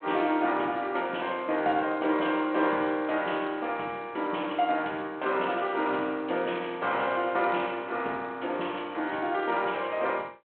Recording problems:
telephone audio; 240 Hz to 3.3 kHz, G.726

